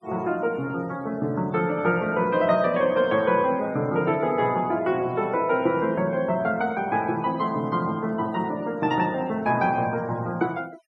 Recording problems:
noise reduction artefacts; signal-to-artefact ratio 25 dB

